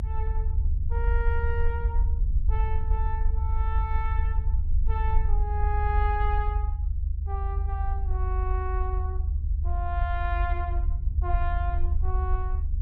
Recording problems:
rumble; below 74 Hz, SNR -7 dB

